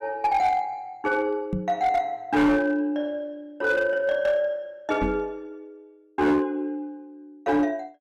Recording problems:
distortion; hard clipping, uneven, signal-to-distortion ratio 11 dB
microphone thump; at 1.5 s and at 5 s; peak 0 dB vs average level

